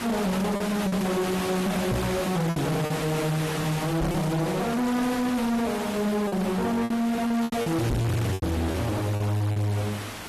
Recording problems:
lossy compression; AAC, log-spectral distance 5 dB, nothing above 13.1 kHz
distorted audio; hard clipping, signal-to-distortion ratio 7 dB
hiss; slope -3 dB per octave, SNR 7 dB
lost packets; 7% of the sound replaced, filled with repeated pitch periods
knock on the microphone; at 2 s, at 4 s and at 8 s; peak +4 dB vs average level

